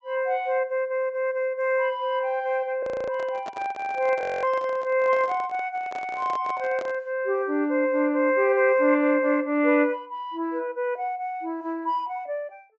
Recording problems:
low-pass filter; nothing above 8 kHz
audio freezing; at 3 s and at 4 s
microphone handling noise; from 3 to 7 s; peak -8 dB vs average level

